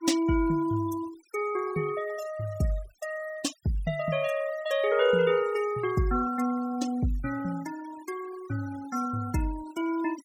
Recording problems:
denoising artefacts; signal-to-artefact ratio 16 dB

